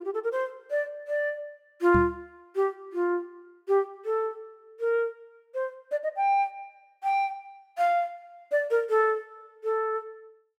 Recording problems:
microphone thump; at 2 s; peak +3 dB vs average level

